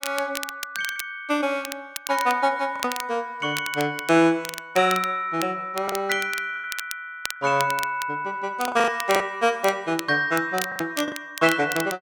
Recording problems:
crackling; vinyl, SNR 11 dB
lost packets; 5% of the sound replaced, filled with the last packet

